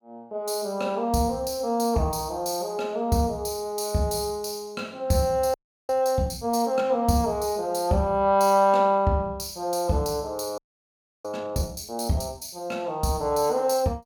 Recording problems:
audio freezing; at 5.5 s and at 11 s for 0.5 s

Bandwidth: 17.5 kHz